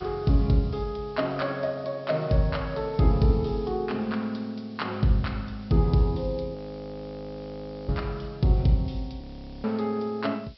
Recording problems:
low-pass filter; nothing above 5.5 kHz
background hiss; SNR 27 dB
audio freezing; at 6.5 s for 1.5 s and at 9 s

